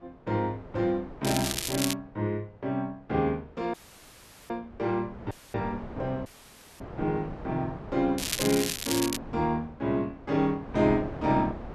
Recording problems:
wind on the microphone; below 620 Hz, SNR 14 dB
crackle; at 1 s and at 8 s; loose cable, SNR 2 dB
audio cutting out; at 3.5 s for 1 s, at 5.5 s and at 6.5 s for 0.5 s

